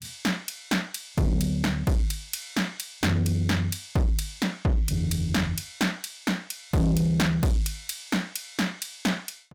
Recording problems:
distorted audio; soft clipping, signal-to-distortion ratio 8 dB

